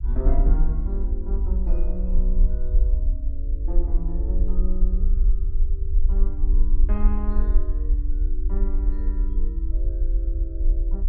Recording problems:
low-frequency rumble; below 46 Hz, SNR -12 dB

